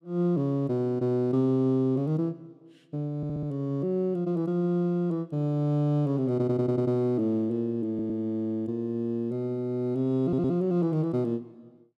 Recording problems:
audio stuttering; 4 times, first at 3 s

